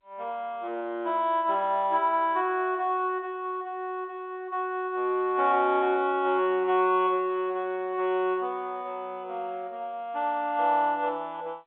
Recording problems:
telephone audio; 300 Hz to 3.6 kHz, G.711

